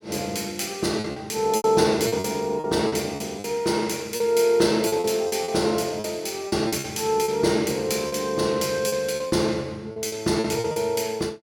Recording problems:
packet loss; 10% of the sound replaced, filled with repeated pitch periods

